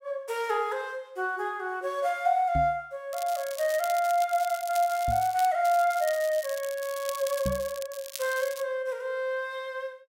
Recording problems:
microphone bump; at 2.5 s, at 5 s and at 7.5 s; peak 0 dB vs average level
crackle; from 3 to 5.5 s and from 5.5 to 8.5 s; loose cable, SNR 13 dB

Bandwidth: 16 kHz